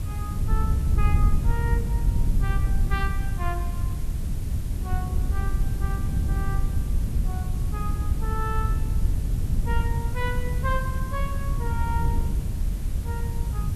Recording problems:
background hiss; slope -3 dB per octave, SNR 10 dB
wind on the microphone; below 94 Hz, SNR -9 dB

